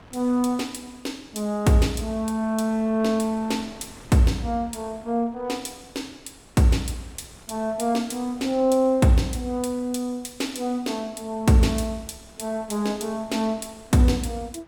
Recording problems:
wind on the microphone; below 1.1 kHz, SNR 25 dB

